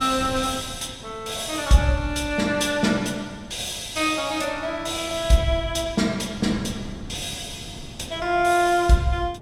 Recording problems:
wind on the microphone; below 270 Hz, SNR 17 dB

